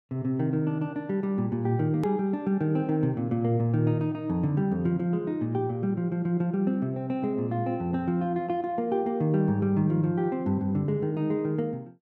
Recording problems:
click at an edit; at 2 s

